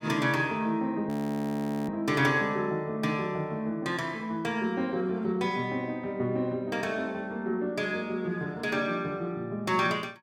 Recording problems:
audio freezing; at 1 s for 1 s

